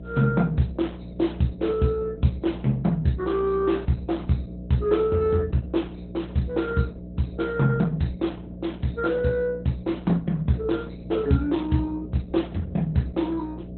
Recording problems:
codec artefacts; Opus, log-spectral distance 3 dB, nothing above 4 kHz
electrical hum; 60 Hz, harmonics up to 660 Hz, SNR 12 dB

